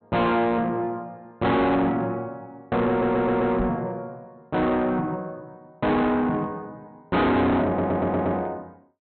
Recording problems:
low-pass filter; nothing above 4.2 kHz
distortion; soft clipping, signal-to-distortion ratio 7 dB
audio stuttering; at 3 s and at 7.5 s
microphone thump; at 3.5 s; peak -1 dB vs average level

